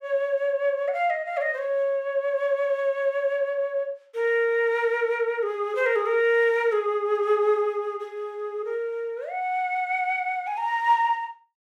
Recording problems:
none

